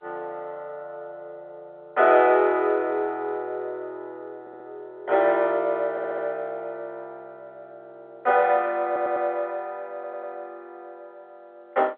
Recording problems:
phone line; 280 Hz to 3.3 kHz, G.711
stutter; 4 times, first at 4.5 s

